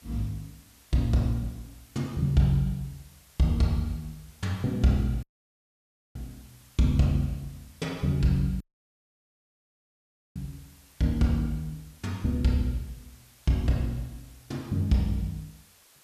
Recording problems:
background hiss; slope 0 dB per octave, SNR 27 dB
dropout; at 5 s for 1 s and at 8.5 s for 2 s

